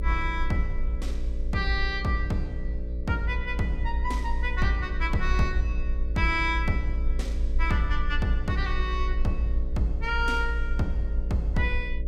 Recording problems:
electrical hum; 60 Hz, harmonics up to 600 Hz, SNR 12 dB
rumble; below 56 Hz, strongest tone 22 Hz, SNR 2 dB

